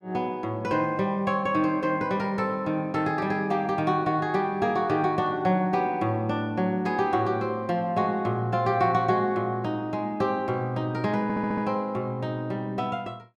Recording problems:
audio stuttering; at 11 s

